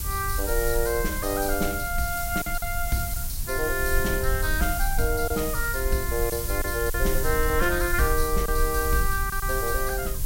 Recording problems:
hiss; SNR 5 dB
low-frequency rumble; below 62 Hz, strongest tone 20 Hz, SNR 5 dB
packet loss; 3% of the sound replaced, filled with silence

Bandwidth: 16 kHz